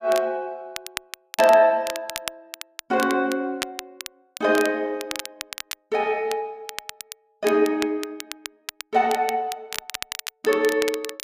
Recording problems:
crackling; vinyl, SNR 12 dB

